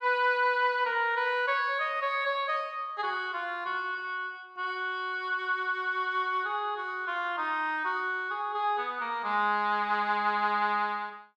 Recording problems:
none

